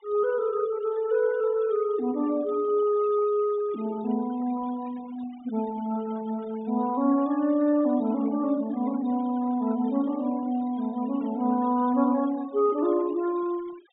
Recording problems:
treble missing; nothing above 4 kHz
denoising artefacts; signal-to-artefact ratio 23 dB

